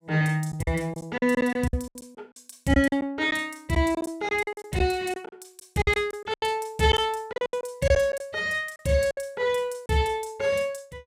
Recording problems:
lost packets; 12% of the sound replaced, filled with silence

